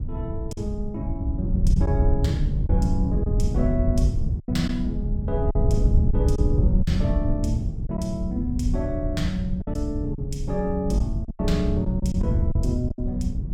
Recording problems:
wind noise; below 110 Hz, SNR -3 dB
packet loss; 5% of the sound replaced, filled with silence

